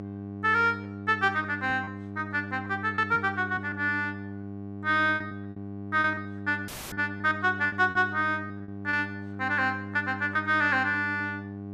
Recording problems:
hum; 50 Hz, harmonics up to 1.1 kHz, SNR 11 dB
lost packets; 8% of the sound replaced, filled with repeated pitch periods
audio cutting out; at 6.5 s; filled with static

